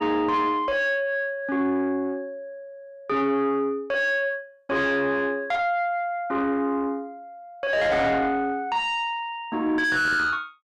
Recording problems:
distorted audio; soft clipping, signal-to-distortion ratio 7 dB

